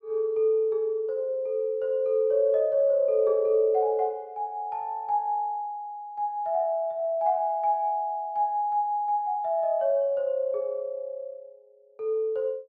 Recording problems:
none

